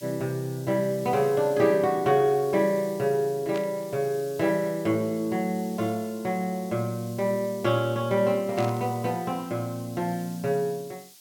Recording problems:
background hiss; SNR 20 dB
static burst; at 3.5 s and at 8.5 s; peak -9 dB vs average level

